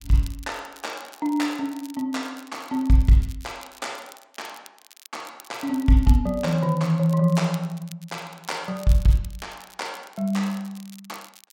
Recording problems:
crackling; vinyl, SNR 23 dB

